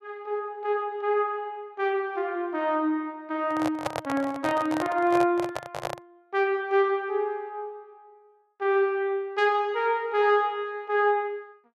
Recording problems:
handling noise; from 3.5 to 6 s; peak +2 dB vs average level

